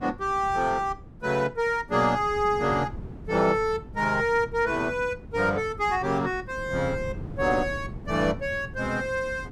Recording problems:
wind noise; below 210 Hz, SNR 15 dB

